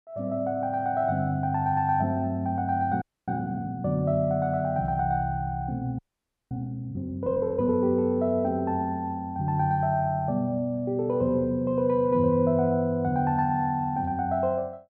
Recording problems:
audio freezing; at 3 s and at 6 s for 0.5 s

